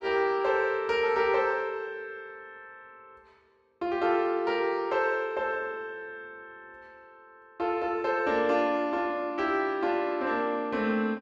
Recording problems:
none

